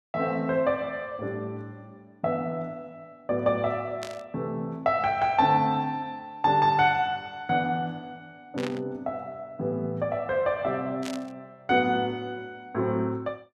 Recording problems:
burst of static; at 4 s, at 8.5 s and at 11 s; peak -6 dB vs average level

